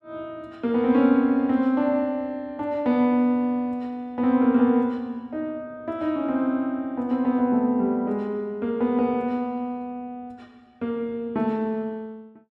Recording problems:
none

